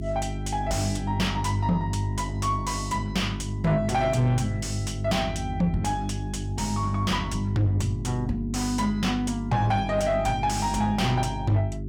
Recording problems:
distortion; soft clipping, signal-to-distortion ratio 6 dB
hum; 50 Hz, harmonics up to 400 Hz, SNR 7 dB

